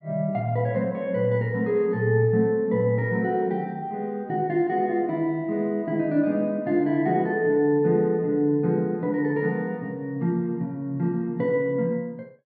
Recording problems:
none

